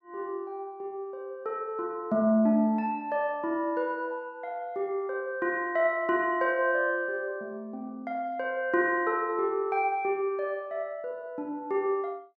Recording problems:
none

